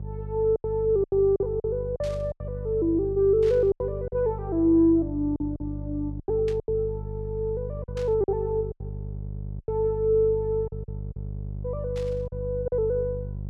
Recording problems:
hum; 50 Hz, harmonics up to 400 Hz, SNR 10 dB
packet loss; 9% of the sound replaced, filled with silence
static burst; 5 times, first at 2 s; peak -13 dB vs average level

